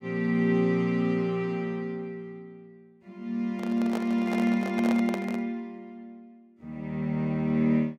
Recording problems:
handling noise; from 3.5 to 5.5 s; peak -2 dB vs average level

